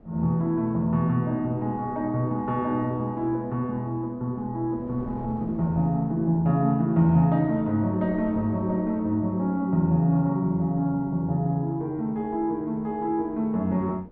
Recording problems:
wind noise; below 390 Hz, SNR 23 dB

